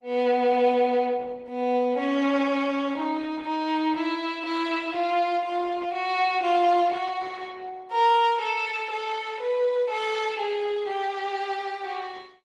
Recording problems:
lossy codec; Opus, log-spectral distance 3 dB, nothing above 10.4 kHz

